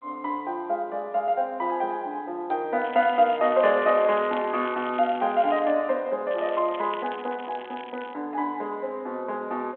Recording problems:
telephone audio; 320 Hz to 3.6 kHz, G.726
crackling; from 3 to 5.5 s and from 6.5 to 8 s; loose cable, SNR 20 dB

